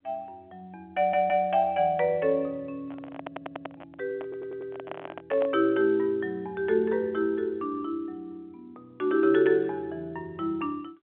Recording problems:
telephone audio; 240 Hz to 3.5 kHz, G.711
audio stuttering; at 1 s, at 3 s and at 4 s
microphone handling noise; from 3 to 5.5 s; peak -6 dB vs average level

